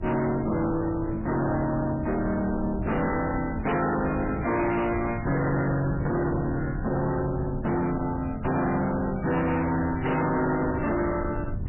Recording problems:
codec artefacts; MP3, log-spectral distance 4 dB, nothing above 2.8 kHz
distorted audio; hard clipping, uneven, signal-to-distortion ratio 6 dB
wind noise; below 200 Hz, SNR 9 dB

